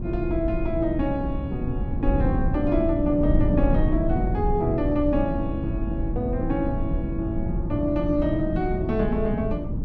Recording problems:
wind on the microphone; below 170 Hz, SNR 2 dB

